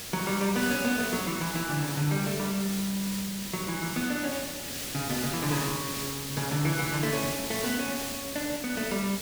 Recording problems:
background hiss; SNR 3 dB

